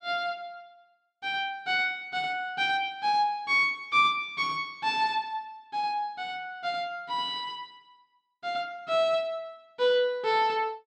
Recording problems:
none

